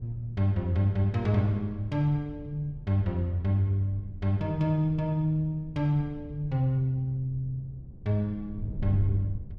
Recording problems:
wind on the microphone; below 120 Hz, SNR 14 dB

